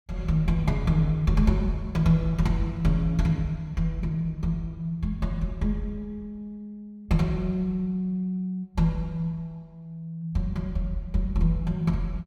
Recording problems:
none

